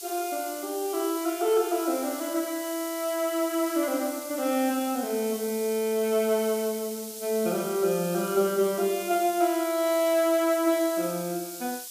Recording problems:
background hiss; SNR 10 dB

